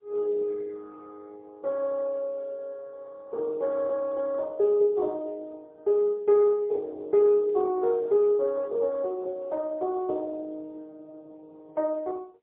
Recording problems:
phone line; 320 Hz to 2.1 kHz, AMR-NB, then MP3

